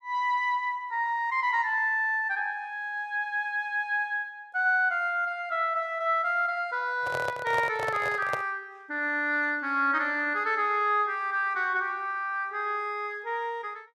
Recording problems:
handling noise; from 7 to 8.5 s; peak -1 dB vs average level

